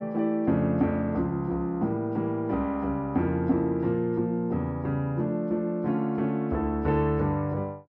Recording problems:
none

